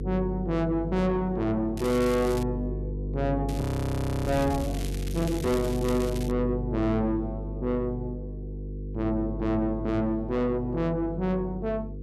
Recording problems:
distortion; soft clipping, signal-to-distortion ratio 7 dB
electrical hum; 50 Hz, harmonics up to 500 Hz, SNR 6 dB
crackling; at 2 s and from 3.5 to 6.5 s; loose cable, SNR 15 dB
audio freezing; at 3.5 s for 0.5 s

